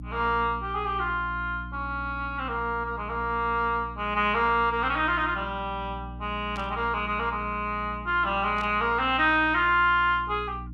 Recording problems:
electrical hum; 60 Hz, harmonics up to 300 Hz, SNR 14 dB
static burst; at 6.5 s and at 8.5 s; peak -13 dB vs average level

